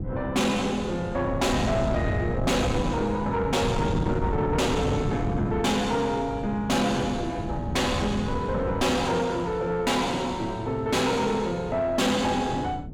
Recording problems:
distortion; soft clipping, signal-to-distortion ratio 7 dB
wind on the microphone; below 250 Hz, SNR 6 dB

